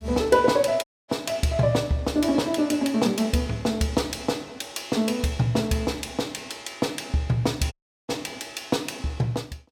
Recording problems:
audio cutting out; at 1 s and at 7.5 s

